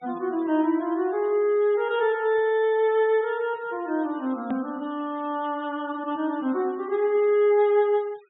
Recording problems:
low-pass filter; nothing above 4 kHz
noise reduction artefacts; signal-to-artefact ratio 28 dB
hard cut with a click; at 4.5 s

